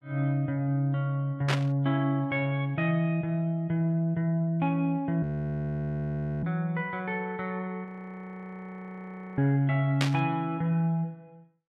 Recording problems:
burst of static; at 1.5 s and at 10 s; peak +3 dB vs average level
frozen audio; at 5 s for 1 s and at 8 s for 1.5 s

